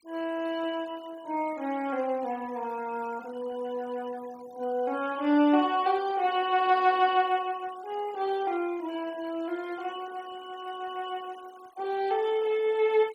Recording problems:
noise reduction artefacts; signal-to-artefact ratio 24 dB

